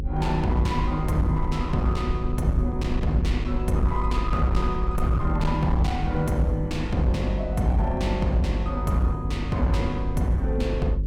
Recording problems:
distorted audio; hard clipping, uneven, signal-to-distortion ratio 11 dB
hum; 50 Hz, harmonics up to 550 Hz, SNR 5 dB
low-frequency rumble; below 68 Hz, SNR 7 dB

